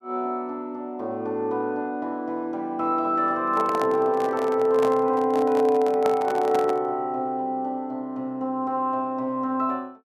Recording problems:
handling noise; from 3.5 to 7 s; peak -1 dB vs average level

